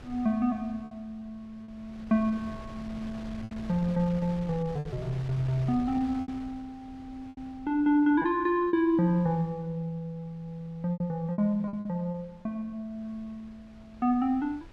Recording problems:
wind noise; below 350 Hz, SNR 18 dB
lost packets; 5% of the sound replaced, filled with repeated pitch periods

